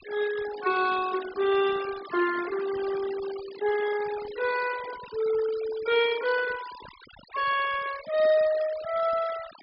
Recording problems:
low-pass filter; nothing above 5.5 kHz
noise reduction artefacts; signal-to-artefact ratio 15 dB

